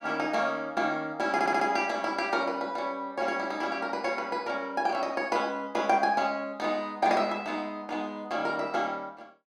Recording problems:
stutter; at 1.5 s

